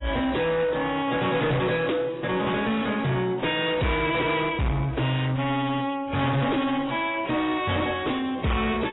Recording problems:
lossy compression; AAC, then AAC, log-spectral distance 5 dB, nothing above 3.8 kHz
distortion; soft clipping, signal-to-distortion ratio 6 dB

